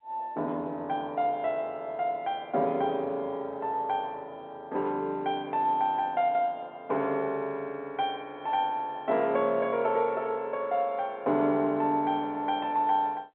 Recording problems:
phone line; 260 Hz to 3.5 kHz, G.711

